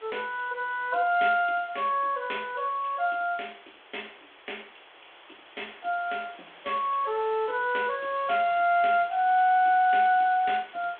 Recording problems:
telephone audio; 280 Hz to 3.5 kHz, G.726
hiss; SNR 23 dB

